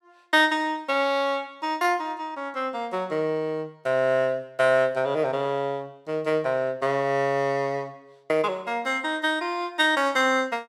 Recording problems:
none

